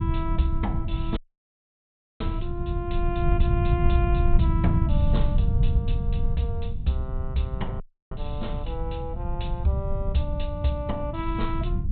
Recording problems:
low-pass filter; nothing above 4 kHz
low-frequency rumble; below 100 Hz, SNR -3 dB
audio cutting out; at 1 s for 1 s and at 8 s

